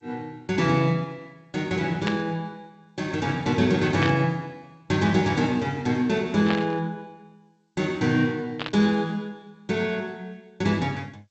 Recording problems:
lossy compression; G.722, then MP2, log-spectral distance 3 dB, nothing above 7.6 kHz
static burst; 4 times, first at 2 s; peak 0 dB vs average level

